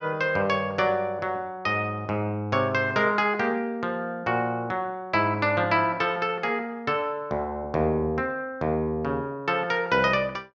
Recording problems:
none

